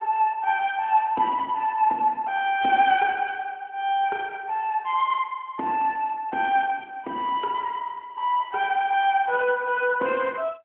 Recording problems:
telephone audio; 240 Hz to 3.4 kHz, AMR-NB

